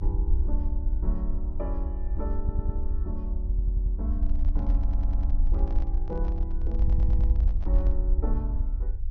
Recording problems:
low-pass filter; nothing above 6.4 kHz
low-frequency rumble; below 58 Hz, SNR -11 dB
stutter; 4 times, first at 2.5 s
handling noise; from 4 to 8 s; peak -7 dB vs average level

